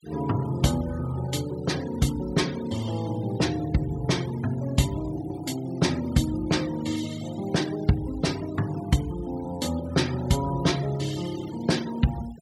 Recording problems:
denoising artefacts; signal-to-artefact ratio 17 dB

